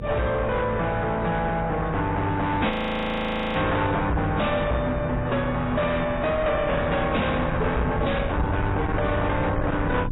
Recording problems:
codec artefacts; AAC, then AAC, log-spectral distance 3 dB, nothing above 3.8 kHz
distortion; soft clipping, signal-to-distortion ratio 8 dB
electrical hum; 50 Hz, harmonics up to 500 Hz, SNR 13 dB
wind on the microphone; below 340 Hz, SNR 8 dB
audio freezing; at 2.5 s for 1 s

